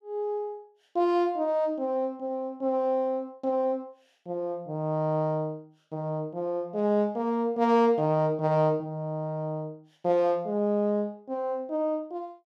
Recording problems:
none

